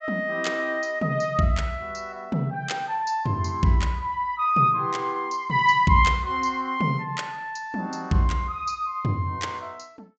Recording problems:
treble cut off; nothing above 8 kHz

